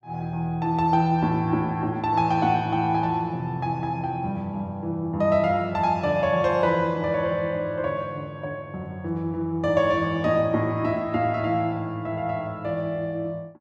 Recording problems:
none

